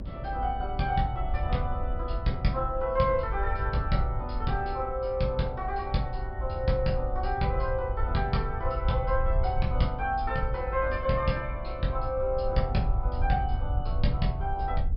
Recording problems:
treble cut off; nothing above 5.3 kHz
low-frequency rumble; below 72 Hz, SNR 4 dB
wind on the microphone; below 310 Hz, SNR 17 dB

